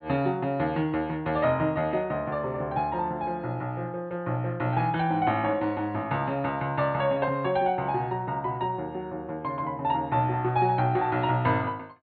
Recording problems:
treble missing; nothing above 4.4 kHz

